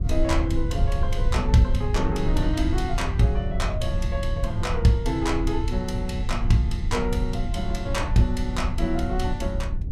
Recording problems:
low-frequency rumble; below 80 Hz, SNR 2 dB

